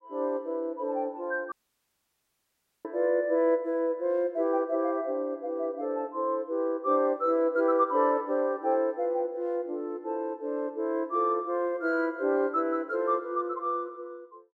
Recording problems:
dropout; at 1.5 s for 1.5 s

